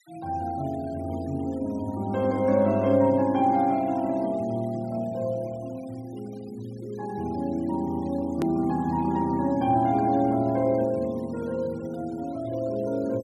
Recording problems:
noise reduction artefacts; signal-to-artefact ratio 25 dB
click at an edit; at 8.5 s

